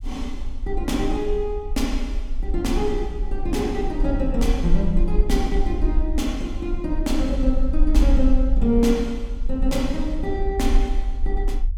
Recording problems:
low-frequency rumble; below 46 Hz, strongest tone 20 Hz, SNR 1 dB

